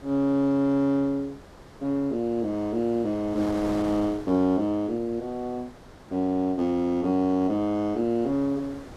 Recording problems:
wind on the microphone; below 1.1 kHz, SNR 19 dB

